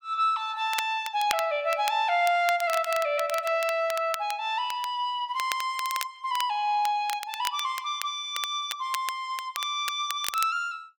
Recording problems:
crackle; vinyl, SNR 11 dB

